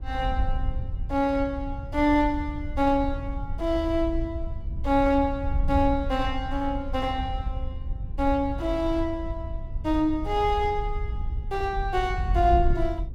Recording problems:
wind on the microphone; below 74 Hz, SNR 6 dB

